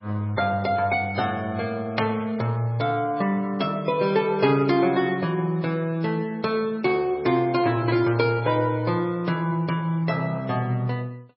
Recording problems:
codec artefacts; MP3, log-spectral distance 2 dB, nothing above 4.6 kHz

